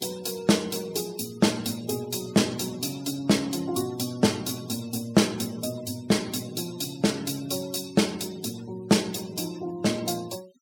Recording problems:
denoising artefacts; signal-to-artefact ratio 20 dB

